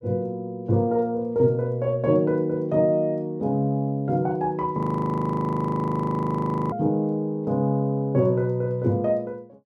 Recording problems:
audio freezing; at 5 s for 2 s

